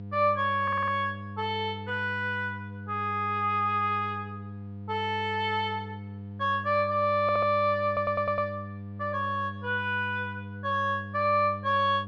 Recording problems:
hum; 50 Hz, harmonics up to 700 Hz, SNR 12 dB
audio stuttering; at 0.5 s, at 7 s and at 8 s

